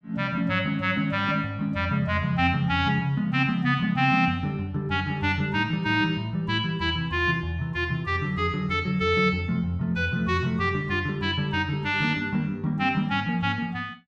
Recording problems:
none

